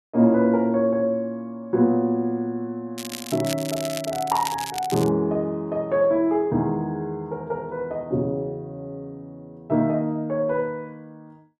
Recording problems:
crackle; from 3 to 5 s; loose cable, SNR 11 dB

